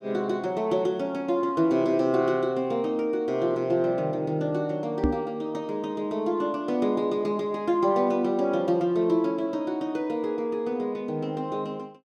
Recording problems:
knock on the microphone; at 5 s; peak +5 dB vs average level

